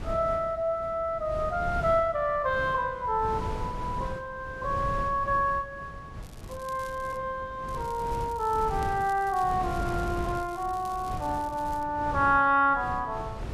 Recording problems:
wind noise; below 290 Hz, SNR 11 dB
crackle; at 6 s and from 7.5 to 12 s; loose cable, SNR 24 dB

